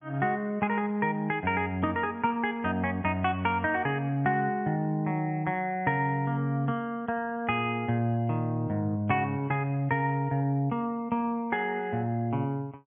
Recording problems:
low-pass filter; nothing above 3.4 kHz

